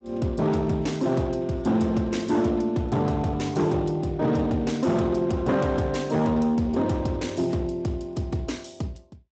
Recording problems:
lossy codec; Speex, log-spectral distance 3 dB, nothing above 7.6 kHz
distortion; hard clipping, uneven, signal-to-distortion ratio 11 dB

